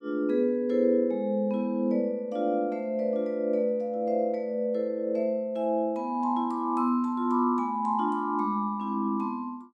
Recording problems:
none

